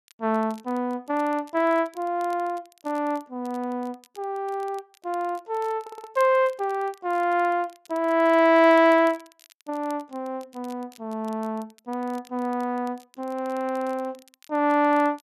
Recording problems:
crackle; vinyl, SNR 29 dB
audio stuttering; at 6 s

